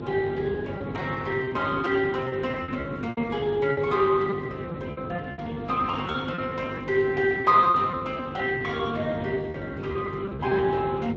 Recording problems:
lossy codec; Speex, then Vorbis, log-spectral distance 3 dB
hum; 50 Hz, harmonics up to 500 Hz, SNR 11 dB
wind on the microphone; below 470 Hz, SNR 13 dB
lost packets; 12% of the sound replaced, filled with repeated pitch periods

